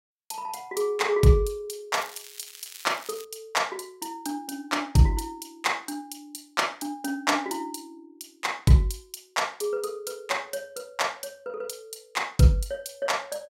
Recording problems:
crackling; from 2 to 3.5 s; loose cable, SNR 16 dB

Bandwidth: 16 kHz